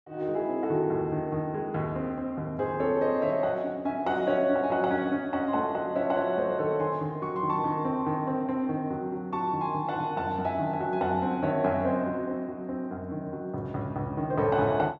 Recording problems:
none

